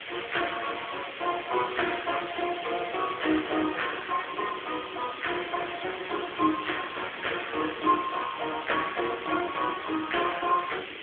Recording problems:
telephone audio; 240 Hz to 3.4 kHz, AMR-NB
hiss; SNR 9 dB
wind on the microphone; below 520 Hz, SNR 17 dB

